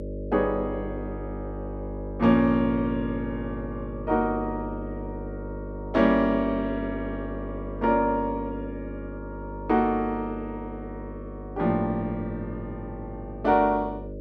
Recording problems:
electrical hum; 50 Hz, harmonics up to 600 Hz, SNR 10 dB

